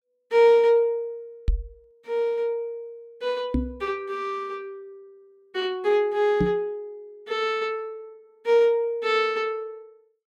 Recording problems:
knock on the microphone; at 1.5 s, at 3.5 s and at 6.5 s; peak +3 dB vs average level

